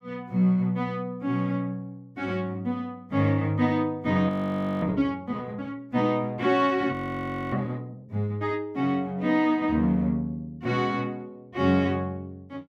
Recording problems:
audio freezing; at 4.5 s for 0.5 s and at 7 s for 0.5 s

